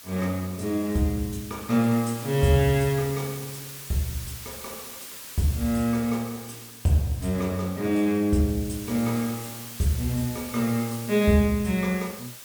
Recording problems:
hiss; slope +1 dB per octave, SNR 13 dB

